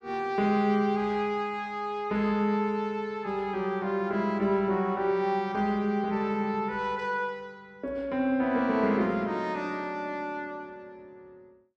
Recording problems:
none

